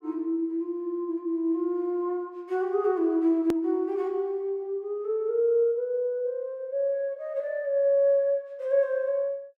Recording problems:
click at an edit; at 3.5 s

